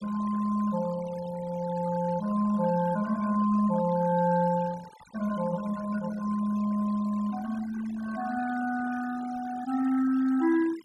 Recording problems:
noise reduction artefacts; signal-to-artefact ratio 18 dB

